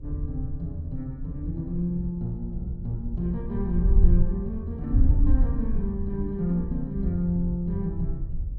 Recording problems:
electrical hum; 60 Hz, harmonics up to 540 Hz, SNR 29 dB
wind noise; below 60 Hz, SNR 0 dB

